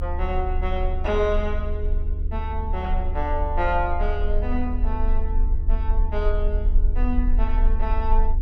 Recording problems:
hum; 50 Hz, harmonics up to 450 Hz, SNR 8 dB
low-frequency rumble; below 44 Hz, strongest tone 26 Hz, SNR -2 dB

